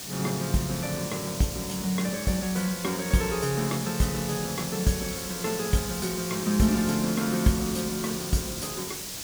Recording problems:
background hiss; SNR 6 dB

